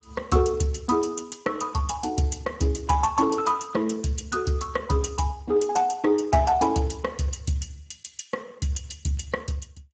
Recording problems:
lossy codec; Speex, log-spectral distance 4 dB, nothing above 7.3 kHz

